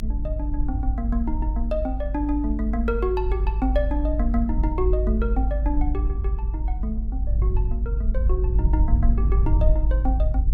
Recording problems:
rumble; below 54 Hz, strongest tone 50 Hz, SNR -4 dB

